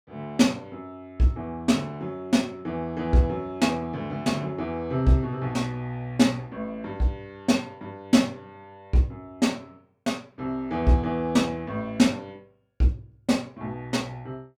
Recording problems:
none

